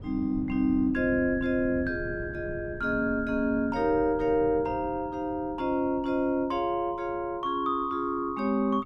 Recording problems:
wind on the microphone; below 210 Hz, SNR 15 dB

